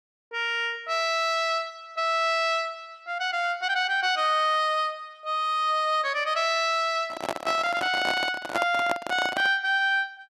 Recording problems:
microphone handling noise; from 7 to 9.5 s; peak +1 dB vs average level

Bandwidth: 12.5 kHz